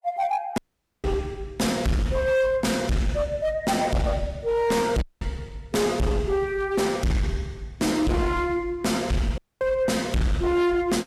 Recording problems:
lossy compression; Vorbis, then Vorbis, log-spectral distance 2 dB, nothing above 13.1 kHz
distortion; hard clipping, signal-to-distortion ratio 6 dB
audio cutting out; at 0.5 s, at 5 s and at 9.5 s

